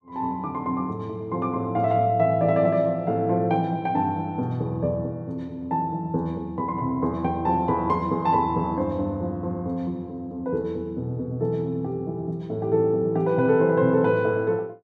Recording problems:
none

